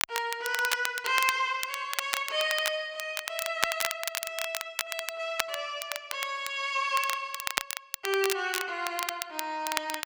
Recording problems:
crackle; vinyl, SNR 3 dB

